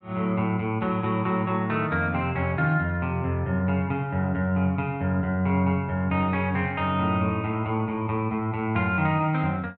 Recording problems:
none

